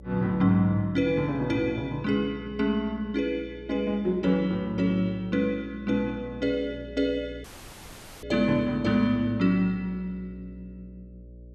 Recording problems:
electrical hum; 60 Hz, harmonics up to 600 Hz, SNR 19 dB
audio cutting out; at 7.5 s for 1 s

